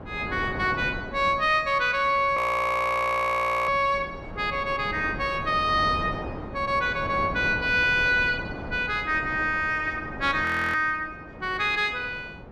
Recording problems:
wind on the microphone; below 650 Hz, SNR 13 dB
frozen audio; at 2.5 s for 1.5 s and at 10 s

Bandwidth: 14 kHz